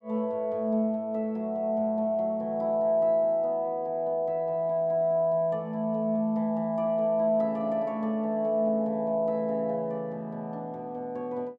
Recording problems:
none

